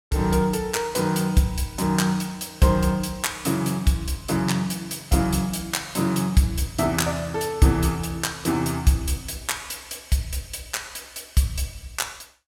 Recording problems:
none

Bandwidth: 16.5 kHz